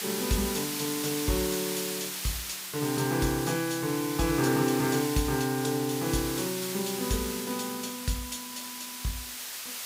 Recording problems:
hiss; slope +3 dB per octave, SNR 4 dB

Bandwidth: 15.5 kHz